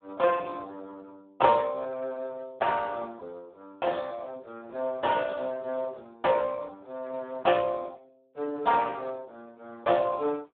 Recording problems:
telephone audio; 260 Hz to 2.3 kHz, Speex

